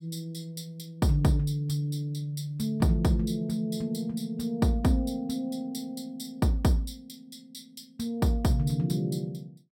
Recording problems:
none

